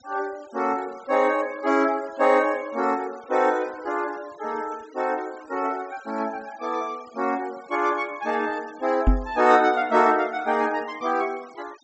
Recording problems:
low-pass filter; nothing above 7.7 kHz
noise reduction artefacts; signal-to-artefact ratio 24 dB
microphone thump; at 9 s; peak +7 dB vs average level

